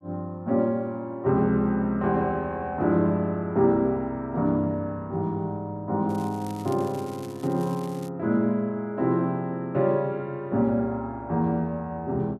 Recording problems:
crackle; from 6 to 8 s; loose cable, SNR 23 dB

